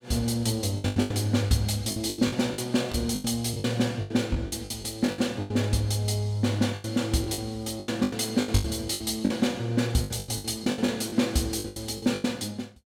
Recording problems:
lost packets; 16% of the sound replaced, filled with the last packet

